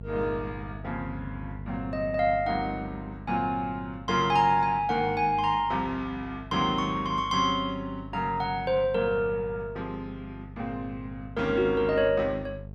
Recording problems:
hum; 50 Hz, harmonics up to 650 Hz, SNR 15 dB

